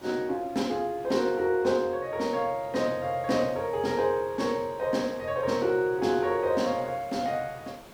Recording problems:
hiss; slope -5 dB per octave, SNR 22 dB

